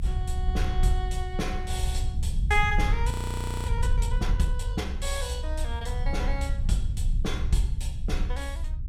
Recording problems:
rumble; below 72 Hz, SNR -2 dB
frozen audio; at 3 s for 0.5 s

